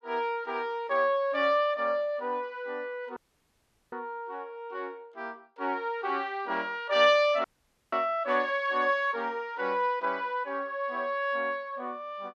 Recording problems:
dropout; at 3 s for 1 s and at 7.5 s

